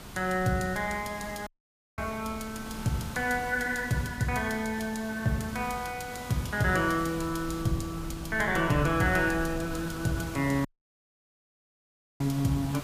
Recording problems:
background hiss; slope -3 dB per octave, SNR 13 dB
wind noise; below 150 Hz, SNR 16 dB
audio cutting out; at 1.5 s for 0.5 s and at 11 s for 1.5 s

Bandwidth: 15 kHz